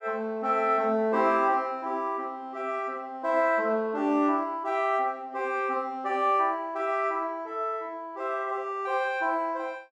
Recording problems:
none

